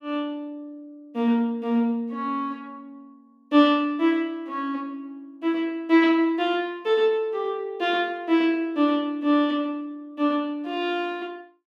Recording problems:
none

